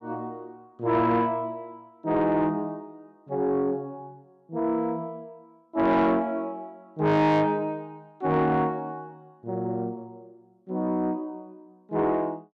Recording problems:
distortion; soft clipping, signal-to-distortion ratio 11 dB

